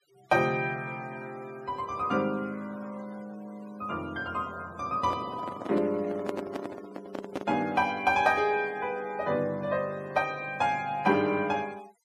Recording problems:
noise reduction artefacts; signal-to-artefact ratio 24 dB
handling noise; from 5 to 8 s; peak 0 dB vs average level

